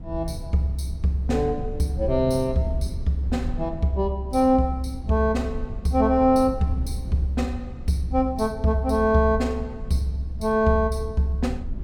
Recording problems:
low-frequency rumble; below 100 Hz, SNR 12 dB

